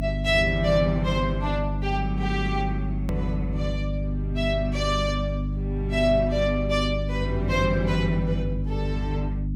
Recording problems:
hum; 50 Hz, harmonics up to 300 Hz, SNR 2 dB
edit click; at 3 s

